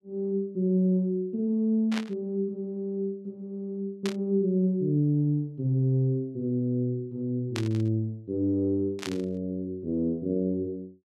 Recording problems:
burst of static; 4 times, first at 2 s; peak -2 dB vs average level

